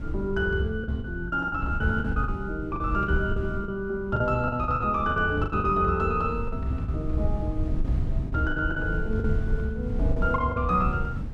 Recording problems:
wind on the microphone; below 100 Hz, SNR 5 dB
lost packets; 11% of the sound replaced, filled with the last packet

